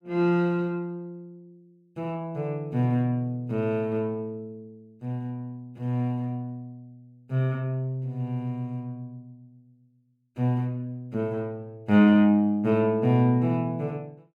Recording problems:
none

